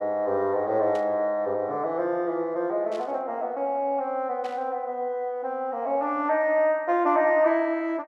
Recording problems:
static burst; at 1 s, at 3 s and at 4.5 s; peak -15 dB vs average level

